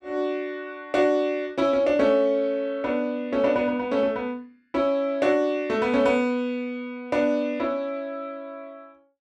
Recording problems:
none

